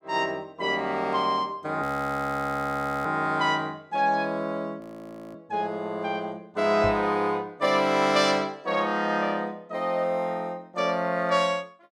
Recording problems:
audio freezing; at 2 s for 1 s and at 5 s for 0.5 s
microphone bump; at 7 s; peak -4 dB vs average level

